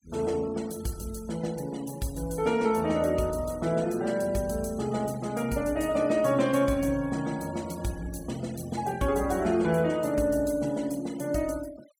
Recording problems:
noise reduction artefacts; signal-to-artefact ratio 20 dB

